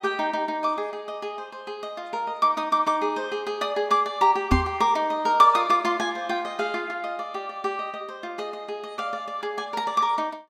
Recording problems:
microphone thump; at 4.5 s; peak +7 dB vs average level

